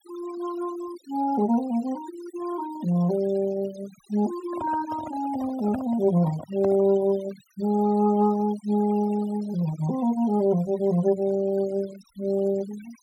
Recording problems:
noise reduction artefacts; signal-to-artefact ratio 20 dB
handling noise; from 4.5 to 7 s; peak -5 dB vs average level

